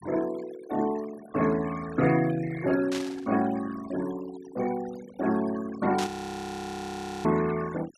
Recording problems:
noise reduction artefacts; signal-to-artefact ratio 15 dB
static burst; at 3 s and at 6 s; peak -2 dB vs average level
frozen audio; at 6 s for 1 s

